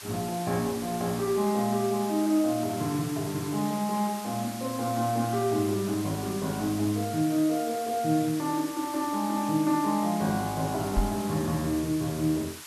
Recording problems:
hiss; SNR 12 dB
knock on the microphone; at 11 s; peak +3 dB vs average level

